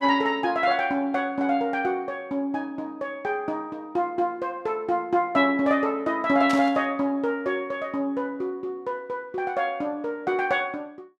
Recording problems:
burst of static; at 6.5 s; peak -4 dB vs average level

